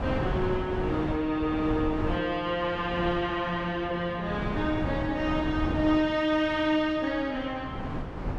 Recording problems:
wind noise; below 480 Hz, SNR 7 dB

